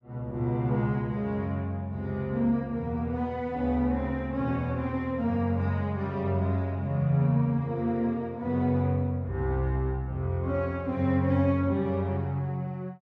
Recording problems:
none

